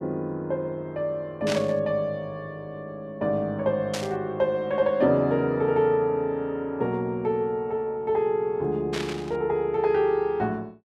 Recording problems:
burst of static; at 1.5 s, at 4 s and at 9 s; peak -2 dB vs average level

